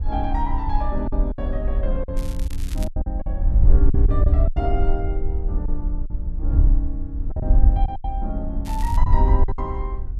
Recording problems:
wind noise; below 60 Hz, SNR -7 dB
lost packets; 8% of the sound replaced, filled with silence
crackling; at 2 s and at 8.5 s; loose cable, SNR 13 dB

